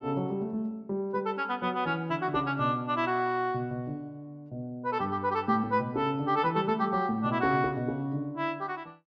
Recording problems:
none

